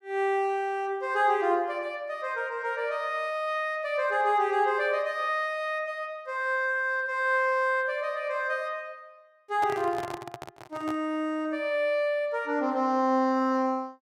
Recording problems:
handling noise; from 9.5 to 11 s; peak -5 dB vs average level

